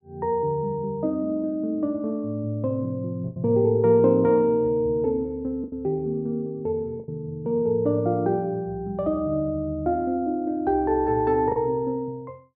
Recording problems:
low-pass filter; nothing above 6.2 kHz
packet loss; 2% of the sound replaced, filled with the last packet

